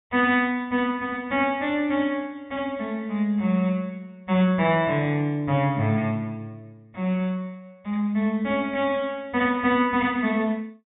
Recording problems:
low-pass filter; nothing above 4 kHz

